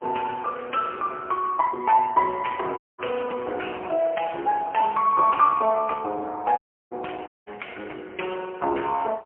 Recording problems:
telephone audio; 320 Hz to 3.2 kHz, AMR-NB, then MP3
audio cutting out; at 3 s, at 6.5 s and at 7.5 s

